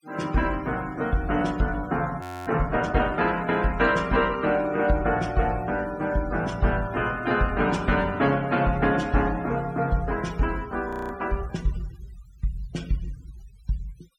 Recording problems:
denoising artefacts; signal-to-artefact ratio 22 dB
frozen audio; at 2 s and at 11 s

